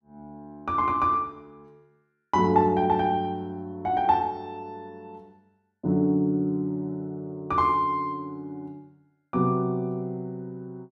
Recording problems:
none

